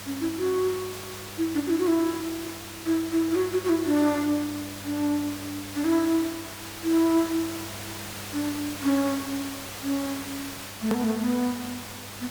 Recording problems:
electrical hum; 50 Hz, harmonics up to 800 Hz, SNR 19 dB
hiss; slope -2 dB per octave, SNR 10 dB
edit click; at 11 s

